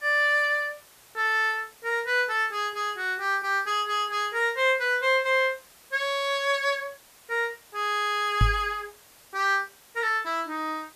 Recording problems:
background hiss; slope -1 dB per octave, SNR 26 dB
knock on the microphone; at 8.5 s; peak +6 dB vs average level

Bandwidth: 14.5 kHz